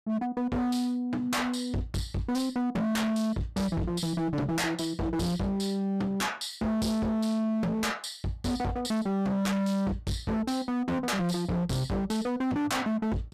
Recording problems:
distortion; hard clipping, signal-to-distortion ratio 6 dB

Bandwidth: 14.5 kHz